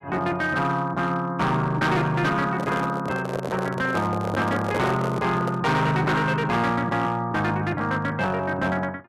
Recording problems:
distorted audio; hard clipping, uneven, signal-to-distortion ratio 10 dB
microphone handling noise; from 2.5 to 5.5 s; peak +1 dB vs average level

